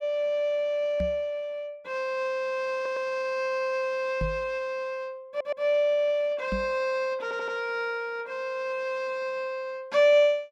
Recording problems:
microphone thump; at 1 s, at 4 s and at 6.5 s; peak -1 dB vs average level
audio stuttering; at 3 s, at 5.5 s and at 7 s

